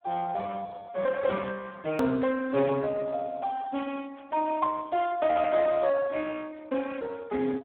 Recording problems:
telephone audio; 220 Hz to 2.1 kHz, Speex
hard cut with a click; at 2 s

